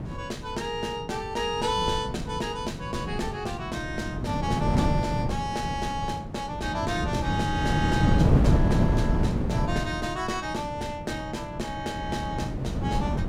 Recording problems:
wind on the microphone; below 240 Hz, SNR -2 dB

